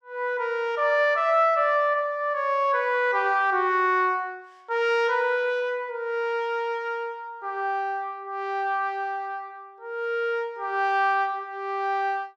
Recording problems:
none

